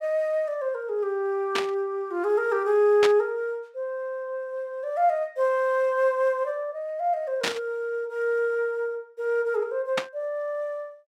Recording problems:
burst of static; 4 times, first at 1.5 s; peak +4 dB vs average level

